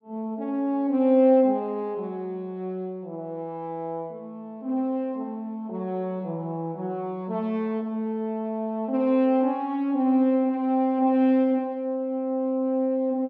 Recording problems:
none

